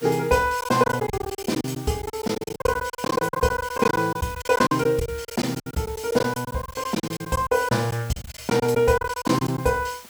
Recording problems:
background hiss; slope 0 dB per octave, SNR 20 dB
packet loss; 18% of the sound replaced, filled with silence

